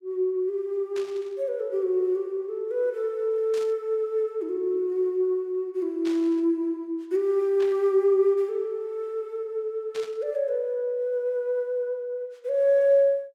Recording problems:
burst of static; 5 times, first at 1 s; peak -11 dB vs average level

